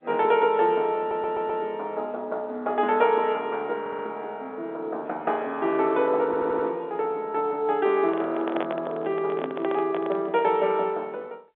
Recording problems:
phone line; 240 Hz to 3.8 kHz, G.711
stutter; at 1 s, at 4 s and at 6.5 s
microphone handling noise; from 8 to 11 s; peak -1 dB vs average level

